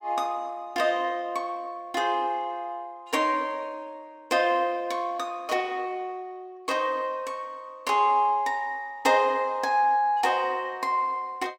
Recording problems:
none

